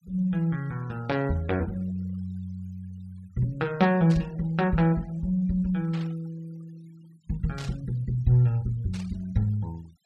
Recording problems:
noise reduction artefacts; signal-to-artefact ratio 27 dB
burst of static; 4 times, first at 4 s; peak -11 dB vs average level

